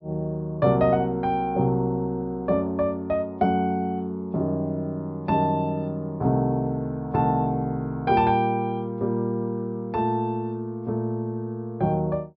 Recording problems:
low-pass filter; nothing above 5.5 kHz

